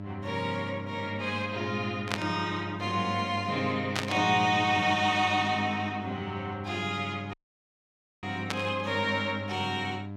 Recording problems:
electrical hum; 50 Hz, harmonics up to 1.3 kHz, SNR 10 dB
burst of static; at 2 s, at 4 s and at 8.5 s; peak +3 dB vs average level
dropout; at 7.5 s for 1 s

